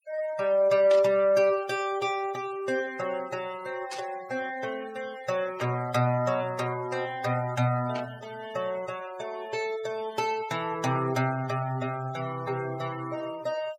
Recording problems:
noise reduction artefacts; signal-to-artefact ratio 19 dB
static burst; 4 times, first at 1 s; peak -5 dB vs average level

